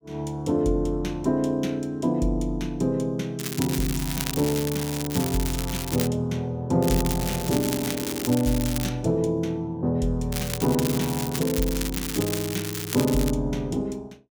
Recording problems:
crackle; from 3.5 to 6 s, from 7 to 9 s and from 10 to 13 s; loose cable, SNR 6 dB

